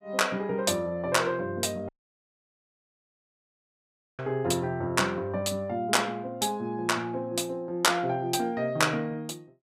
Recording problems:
dropout; at 2 s for 2.5 s

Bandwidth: 15.5 kHz